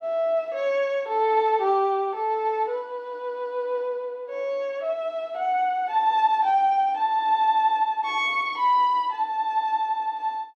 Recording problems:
none

